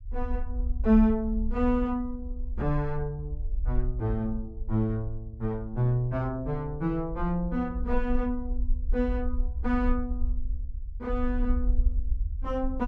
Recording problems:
low-frequency rumble; below 54 Hz, SNR 5 dB

